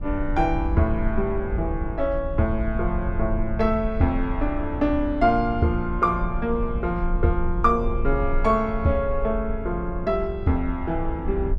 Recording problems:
rumble; below 66 Hz, SNR 6 dB

